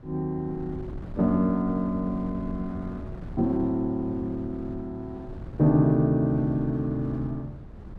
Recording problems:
wind noise; below 210 Hz, SNR 14 dB

